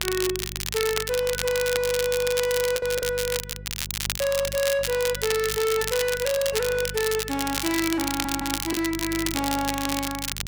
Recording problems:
distorted audio; hard clipping, signal-to-distortion ratio 11 dB
hum; 50 Hz, harmonics up to 400 Hz, SNR 14 dB
crackle; vinyl, SNR 4 dB
lost packets; 2% of the sound replaced, filled with the last packet
audio stuttering; at 8 s

